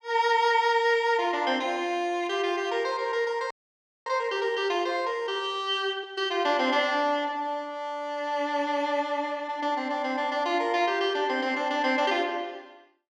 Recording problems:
audio freezing; at 3.5 s for 0.5 s

